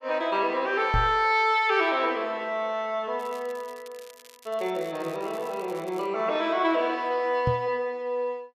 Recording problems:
knock on the microphone; at 1 s and at 7.5 s; peak +2 dB vs average level
crackling; from 3 to 6 s; loose cable, SNR 25 dB

